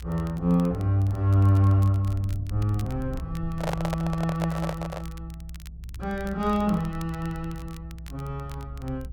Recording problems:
rumble; below 72 Hz, strongest tone 62 Hz, SNR 13 dB
crackle; vinyl, SNR 26 dB
microphone handling noise; from 3.5 to 5 s; peak 0 dB vs average level

